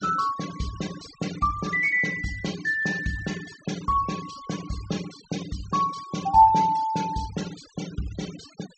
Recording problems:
treble missing; nothing above 8 kHz
denoising artefacts; signal-to-artefact ratio 17 dB

